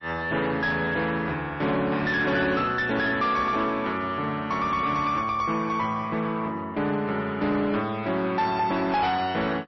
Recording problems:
lossy codec; MP3, log-spectral distance 2 dB, nothing above 5.8 kHz
distorted audio; soft clipping, signal-to-distortion ratio 10 dB

